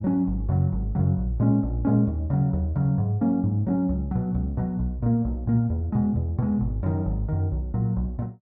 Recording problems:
none

